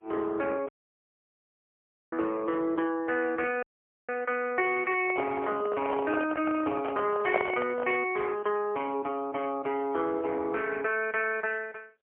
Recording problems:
telephone audio; 300 Hz to 3.1 kHz, AMR-NB, then MP3
audio cutting out; at 0.5 s for 1.5 s and at 3.5 s
microphone handling noise; from 5 to 8 s; peak +5 dB vs average level

